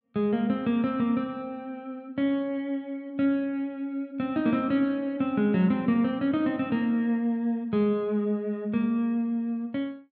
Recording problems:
none

